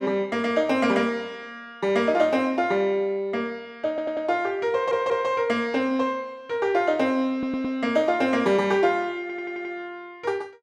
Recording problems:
audio stuttering; 4 times, first at 4 s

